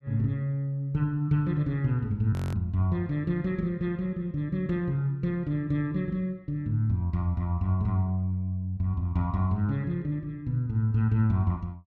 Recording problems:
frozen audio; at 2.5 s

